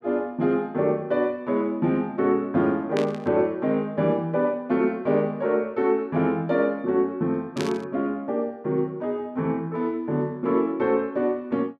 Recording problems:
static burst; at 3 s and at 7.5 s; peak -4 dB vs average level

